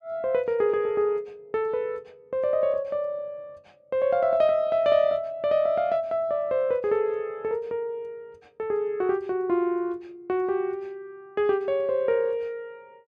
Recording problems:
none

